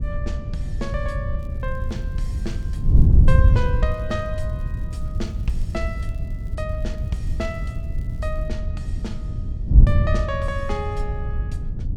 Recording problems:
hum; 60 Hz, harmonics up to 540 Hz, SNR 17 dB
wind on the microphone; below 94 Hz, SNR -7 dB
crackle; from 1.5 to 6.5 s and from 6.5 to 8.5 s; loose cable, SNR 28 dB

